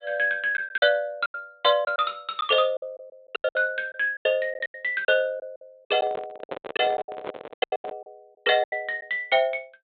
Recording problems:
low-pass filter; nothing above 4 kHz
packet loss; 14% of the sound replaced, filled with silence
microphone handling noise; from 6 to 8 s; peak -4 dB vs average level

